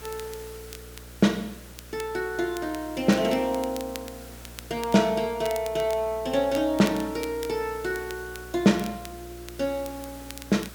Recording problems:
hum; 60 Hz, harmonics up to 600 Hz, SNR 20 dB
hiss; SNR 19 dB
crackling; vinyl, SNR 18 dB

